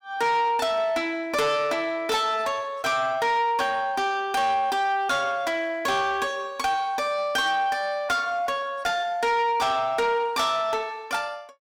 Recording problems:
distorted audio; soft clipping, signal-to-distortion ratio 11 dB

